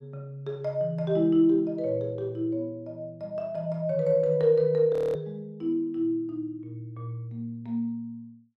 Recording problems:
frozen audio; at 5 s

